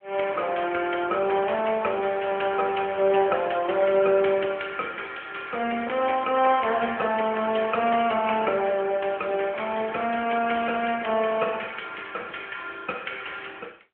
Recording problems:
telephone audio; 260 Hz to 3.1 kHz, AMR-NB

